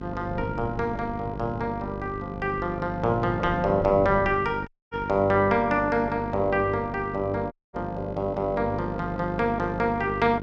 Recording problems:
hum; 50 Hz, harmonics up to 1.1 kHz, SNR 10 dB
wind on the microphone; below 260 Hz, SNR 16 dB
audio cutting out; at 4.5 s and at 7.5 s

